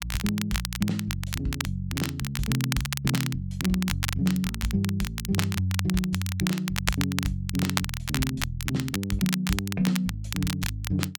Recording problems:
crackling; vinyl, SNR 5 dB

